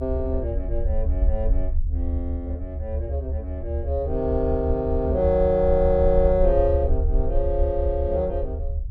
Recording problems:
rumble; below 72 Hz, SNR 3 dB

